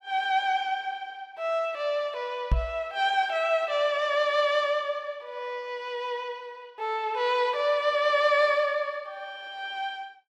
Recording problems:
microphone bump; at 2.5 s; peak +6 dB vs average level

